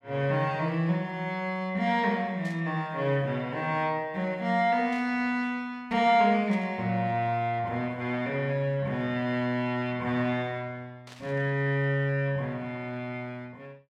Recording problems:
static burst; 4 times, first at 2.5 s; peak -14 dB vs average level

